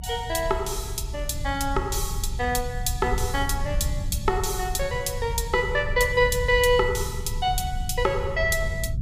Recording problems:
rumble; below 94 Hz, SNR 7 dB

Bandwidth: 15 kHz